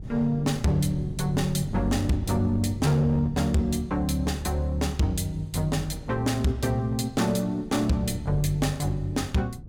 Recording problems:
distortion; hard clipping, uneven, signal-to-distortion ratio 11 dB
wind noise; below 180 Hz, SNR 14 dB

